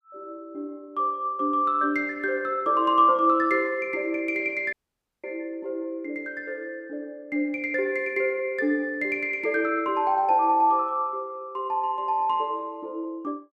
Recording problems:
dropout; at 4.5 s for 0.5 s

